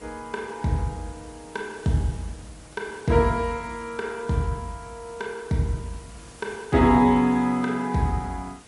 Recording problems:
lossy compression; MP3, log-spectral distance 6 dB, nothing above 12 kHz
background hiss; slope -3 dB per octave, SNR 23 dB

